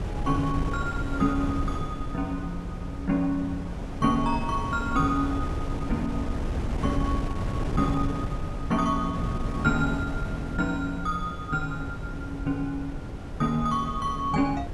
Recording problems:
wind noise; below 230 Hz, SNR 4 dB

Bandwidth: 12 kHz